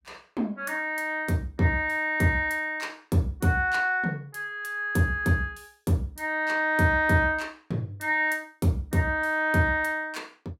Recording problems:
none

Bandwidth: 16 kHz